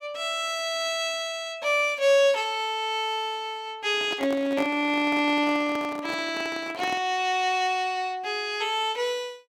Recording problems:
handling noise; from 4 to 7 s; peak -4 dB vs average level

